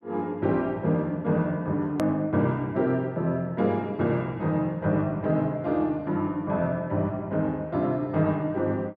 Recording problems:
click at an edit; at 2 s

